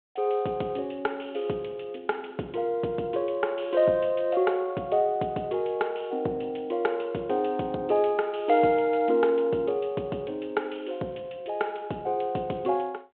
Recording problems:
telephone audio; 260 Hz to 3.5 kHz, G.726

